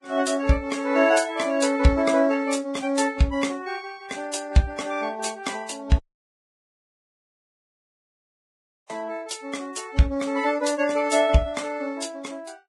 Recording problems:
codec artefacts; Vorbis, log-spectral distance 4 dB, nothing above 10.1 kHz
audio cutting out; at 6 s for 3 s

